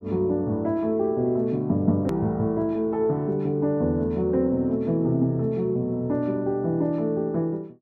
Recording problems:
edit click; at 2 s

